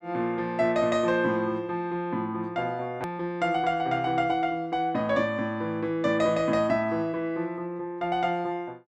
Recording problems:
hard cut with a click; at 3 s

